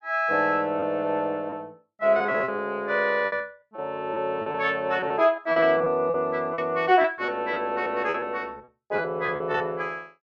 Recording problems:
lost packets; 10% of the sound replaced, filled with repeated pitch periods

